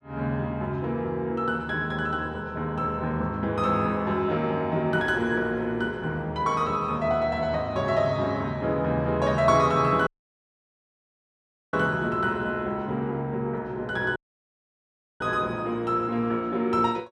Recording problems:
dropout; at 10 s for 1.5 s and at 14 s for 1 s

